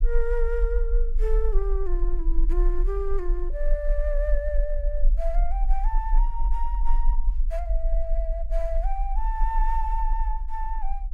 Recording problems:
rumble; below 40 Hz, strongest tone 22 Hz, SNR -5 dB

